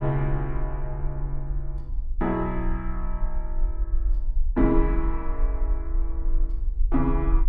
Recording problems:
rumble; below 44 Hz, strongest tone 22 Hz, SNR 1 dB

